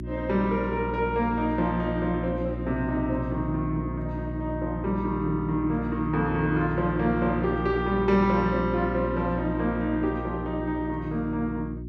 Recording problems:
mains hum; 60 Hz, harmonics up to 360 Hz, SNR 7 dB

